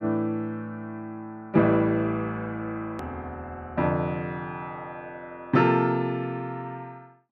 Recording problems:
edit click; at 3 s

